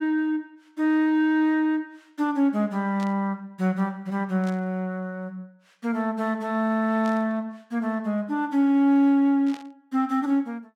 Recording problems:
static burst; 4 times, first at 3 s; peak -14 dB vs average level

